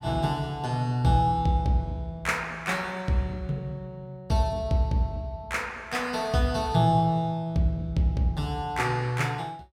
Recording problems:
none

